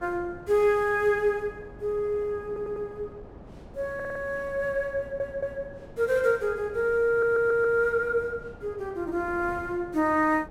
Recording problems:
wind on the microphone; below 480 Hz, SNR 19 dB
stutter; 4 times, first at 2.5 s

